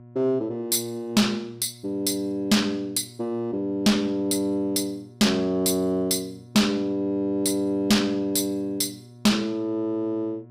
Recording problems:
distorted audio; soft clipping, signal-to-distortion ratio 6 dB
hum; 60 Hz, harmonics up to 720 Hz, SNR 23 dB

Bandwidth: 15.5 kHz